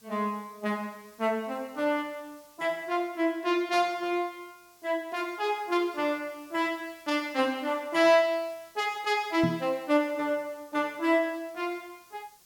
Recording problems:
background hiss; slope +1 dB per octave, SNR 27 dB
knock on the microphone; at 9.5 s; peak +3 dB vs average level

